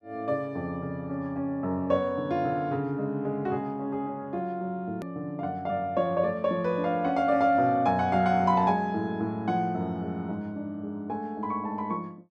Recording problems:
edit click; at 5 s

